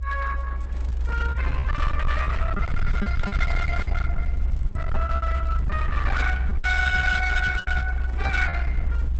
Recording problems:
lossy codec; Opus, log-spectral distance 3 dB, nothing above 8 kHz
distorted audio; hard clipping, uneven, signal-to-distortion ratio 7 dB
low-frequency rumble; below 66 Hz, SNR 0 dB
packet loss; 13% of the sound replaced, filled with repeated pitch periods
microphone handling noise; from 2.5 to 4 s; peak -6 dB vs average level

